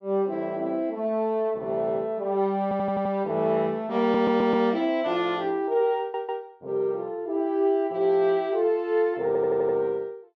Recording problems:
stutter; 4 times, first at 2.5 s

